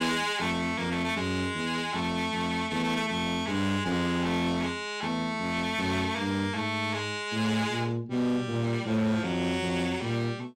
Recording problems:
distorted audio; hard clipping, uneven, signal-to-distortion ratio 10 dB

